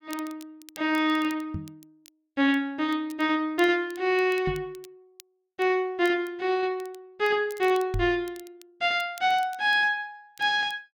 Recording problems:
crackle; vinyl, SNR 26 dB
knock on the microphone; at 1.5 s, at 4.5 s and at 8 s; peak -2 dB vs average level

